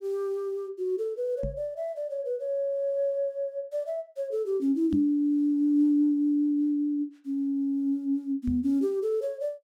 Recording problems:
microphone thump; at 1.5 s, at 5 s and at 8.5 s; peak -1 dB vs average level

